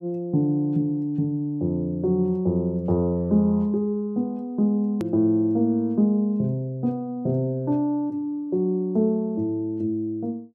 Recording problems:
hard cut with a click; at 5 s

